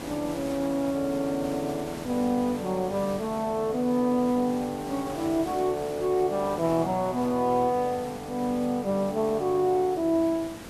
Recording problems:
background hiss; slope -4 dB per octave, SNR 15 dB

